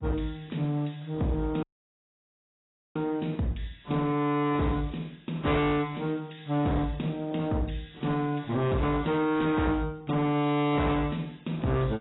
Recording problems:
lossy codec; AAC, log-spectral distance 4 dB, nothing above 3.8 kHz
distortion; hard clipping, signal-to-distortion ratio 8 dB
audio cutting out; at 1.5 s for 1.5 s

